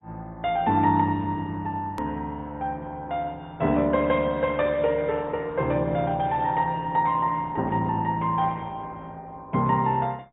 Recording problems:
treble cut off; nothing above 3.2 kHz
lossy codec; Opus, log-spectral distance 2 dB
click at an edit; at 2 s

